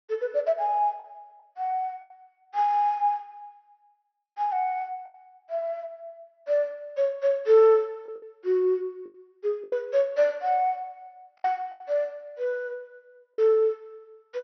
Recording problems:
low-pass filter; nothing above 6 kHz
lost packets; 5% of the sound replaced, filled with the last packet

